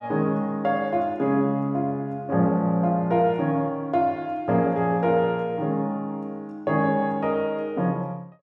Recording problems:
none

